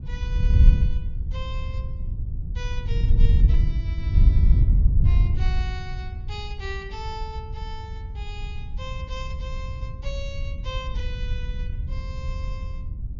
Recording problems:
treble cut off; nothing above 7.1 kHz
wind on the microphone; below 78 Hz, SNR -14 dB

